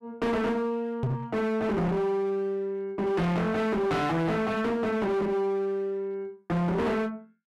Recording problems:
distorted audio; hard clipping, uneven, signal-to-distortion ratio 5 dB
microphone bump; at 1 s; peak +3 dB vs average level

